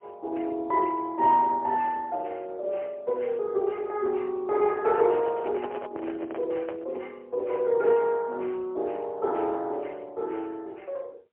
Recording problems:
telephone audio; 320 Hz to 2.7 kHz, AMR-NB, then MP3
handling noise; from 5 to 7 s; peak -5 dB vs average level

